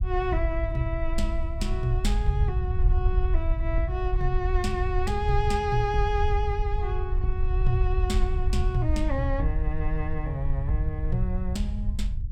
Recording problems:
rumble; below 70 Hz, SNR -2 dB

